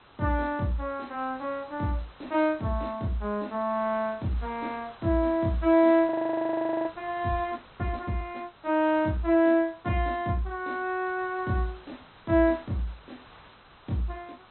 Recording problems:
low-pass filter; nothing above 4.1 kHz
hiss; SNR 23 dB
audio freezing; at 6 s for 1 s

